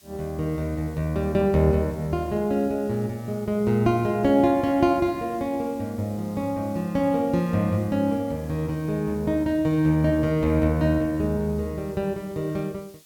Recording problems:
hiss; SNR 27 dB

